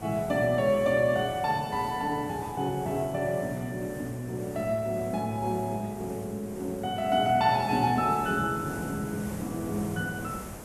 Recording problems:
background hiss; SNR 14 dB

